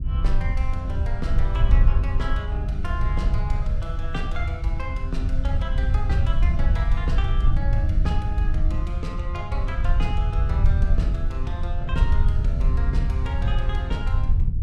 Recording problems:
rumble; below 74 Hz, SNR -9 dB

